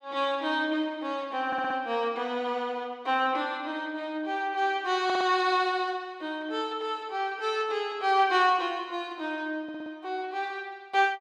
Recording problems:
stutter; at 1.5 s, at 5 s and at 9.5 s

